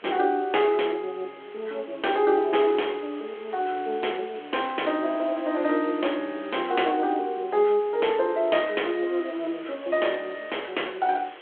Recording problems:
telephone audio; 320 Hz to 3.4 kHz, G.726
hiss; SNR 20 dB

